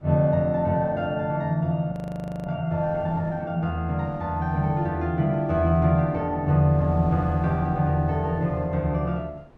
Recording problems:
wind on the microphone; below 450 Hz, SNR 22 dB
audio freezing; at 2 s for 0.5 s

